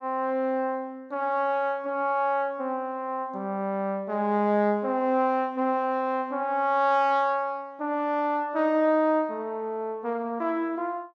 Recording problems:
none

